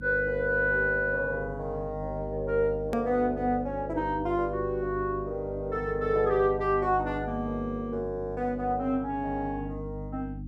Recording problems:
hum; 50 Hz, harmonics up to 300 Hz, SNR 11 dB
edit click; at 3 s

